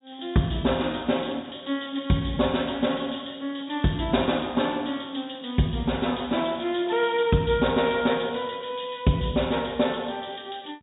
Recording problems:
treble missing; nothing above 4 kHz

